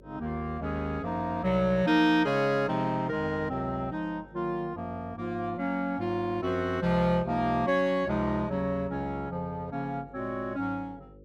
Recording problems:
hum; 50 Hz, harmonics up to 550 Hz, SNR 25 dB

